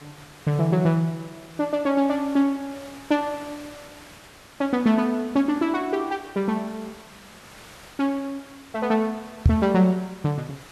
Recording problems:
background hiss; slope -3 dB per octave, SNR 21 dB
microphone thump; at 9.5 s; peak +10 dB vs average level

